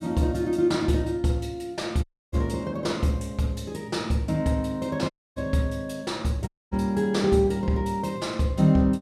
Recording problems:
dropout; at 2 s, at 5 s and at 6.5 s

